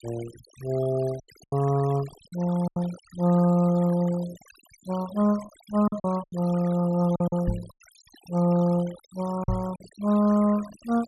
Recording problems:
noise reduction artefacts; signal-to-artefact ratio 20 dB
lost packets; 7% of the sound replaced, filled with silence
microphone bump; at 7.5 s and at 9.5 s; peak +1 dB vs average level

